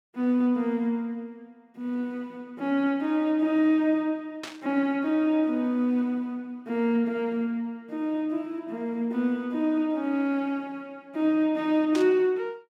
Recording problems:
static burst; at 4.5 s and at 12 s; peak -6 dB vs average level

